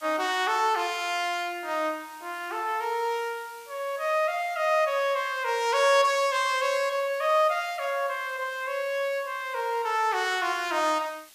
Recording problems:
hiss; slope +2 dB per octave, SNR 23 dB

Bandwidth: 15 kHz